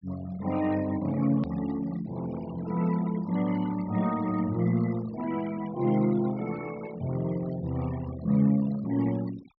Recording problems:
treble missing; nothing above 5.5 kHz
noise reduction artefacts; signal-to-artefact ratio 18 dB
edit click; at 1.5 s

